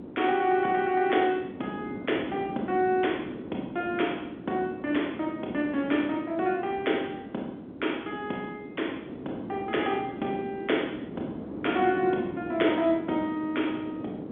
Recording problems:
phone line; 220 Hz to 3.6 kHz, G.711
wind on the microphone; below 410 Hz, SNR 10 dB

